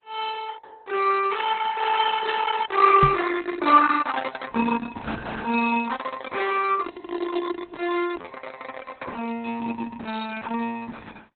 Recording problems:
lossy codec; Opus, log-spectral distance 5 dB, nothing above 4 kHz
knock on the microphone; at 3 s; peak +3 dB vs average level

